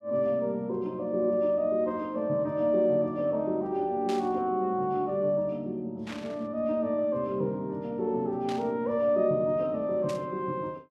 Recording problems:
static burst; 4 times, first at 4 s; peak -9 dB vs average level

